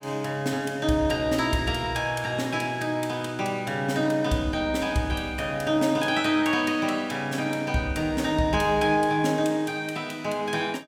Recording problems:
none

